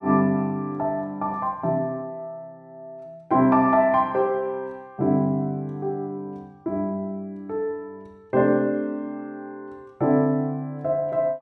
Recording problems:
none

